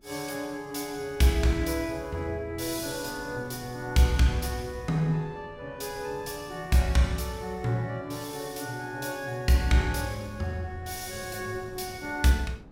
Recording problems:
wind on the microphone; below 290 Hz, SNR 21 dB

